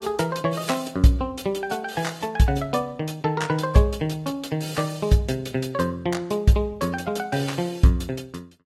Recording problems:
codec artefacts; AAC, log-spectral distance 3 dB

